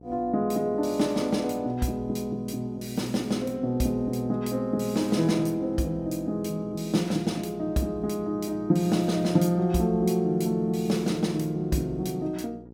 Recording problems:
hum; 60 Hz, harmonics up to 900 Hz, SNR 20 dB

